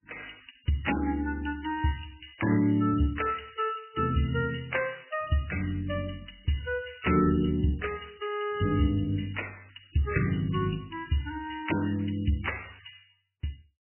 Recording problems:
codec artefacts; MP3, log-spectral distance 9 dB, nothing above 2.9 kHz

